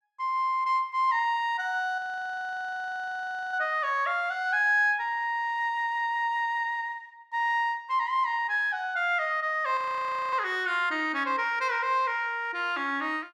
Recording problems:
audio freezing; at 2 s for 1.5 s and at 10 s for 0.5 s

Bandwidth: 13 kHz